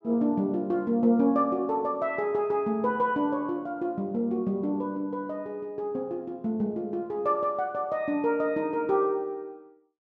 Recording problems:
none

